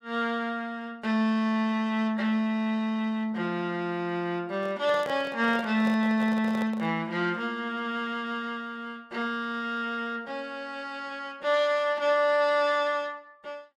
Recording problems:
microphone handling noise; from 4.5 to 7 s; peak -6 dB vs average level

